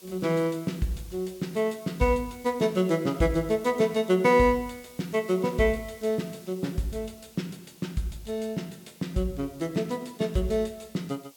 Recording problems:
hiss; SNR 23 dB

